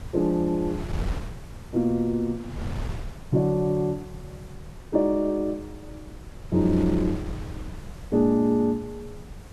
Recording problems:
hiss; slope -3 dB per octave, SNR 30 dB
wind on the microphone; below 170 Hz, SNR 13 dB

